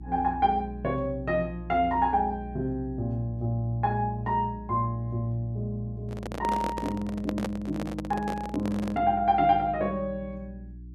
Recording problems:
electrical hum; 60 Hz, harmonics up to 360 Hz, SNR 14 dB
microphone handling noise; from 6 to 9 s; peak 0 dB vs average level

